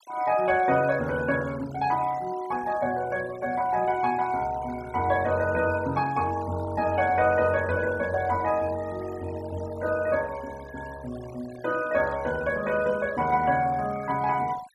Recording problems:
noise reduction artefacts; signal-to-artefact ratio 19 dB

